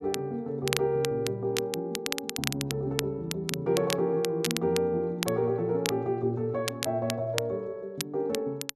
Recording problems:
crackle; vinyl, SNR 6 dB

